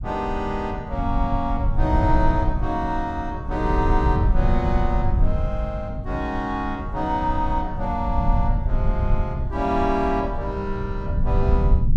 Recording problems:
low-frequency rumble; below 86 Hz, SNR 0 dB

